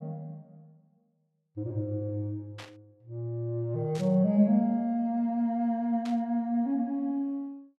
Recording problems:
burst of static; at 2.5 s, at 4 s and at 6 s; peak -11 dB vs average level

